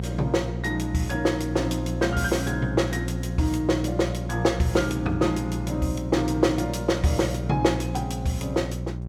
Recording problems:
electrical hum; 60 Hz, harmonics up to 600 Hz, SNR 5 dB

